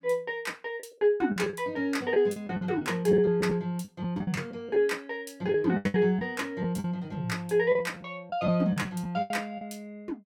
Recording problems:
lost packets; 10% of the sound replaced, filled with the last packet

